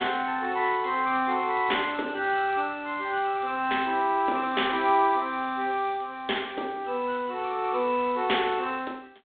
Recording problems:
phone line; 240 Hz to 3.7 kHz, G.726

